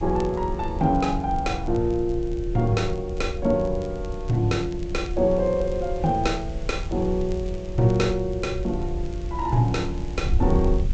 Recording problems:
low-pass filter; nothing above 8 kHz
background hiss; SNR 26 dB
wind noise; below 74 Hz, SNR 8 dB
crackling; vinyl, SNR 29 dB

